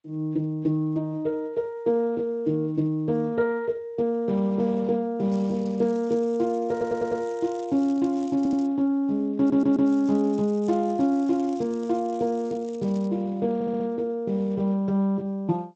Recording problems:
codec artefacts; Speex, then G.722, log-spectral distance 2 dB
crackle; from 5.5 to 8.5 s and from 9.5 to 13 s; loose cable, SNR 27 dB
audio stuttering; 4 times, first at 6.5 s

